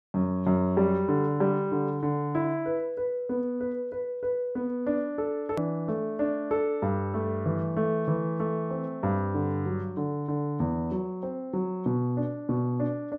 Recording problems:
hard cut with a click; at 5.5 s

